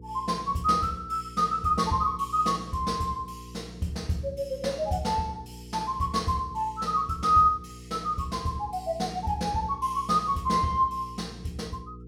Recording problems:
hum; 60 Hz, harmonics up to 480 Hz, SNR 18 dB

